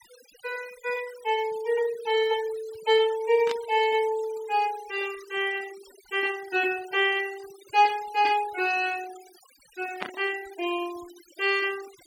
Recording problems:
noise reduction artefacts; signal-to-artefact ratio 18 dB
static burst; at 3.5 s and at 10 s; peak -2 dB vs average level

